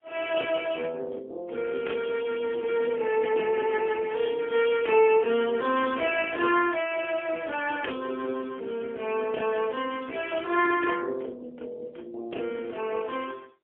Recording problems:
phone line; 300 Hz to 3.3 kHz, AMR-NB, then MP3

